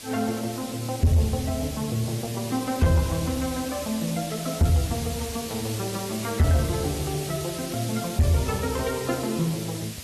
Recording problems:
codec artefacts; AAC, log-spectral distance 8 dB, nothing above 13.1 kHz
distortion; soft clipping, signal-to-distortion ratio 11 dB
background hiss; SNR 8 dB

